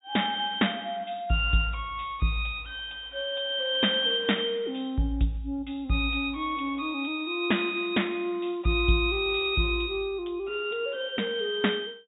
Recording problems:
low-pass filter; nothing above 4 kHz

